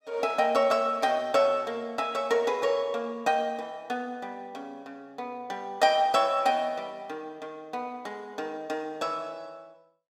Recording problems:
none

